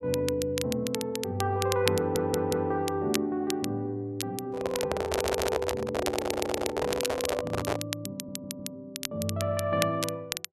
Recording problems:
crackle; vinyl, SNR 6 dB
audio stuttering; 4 times, first at 2 s
microphone handling noise; from 4.5 to 8 s; peak +5 dB vs average level

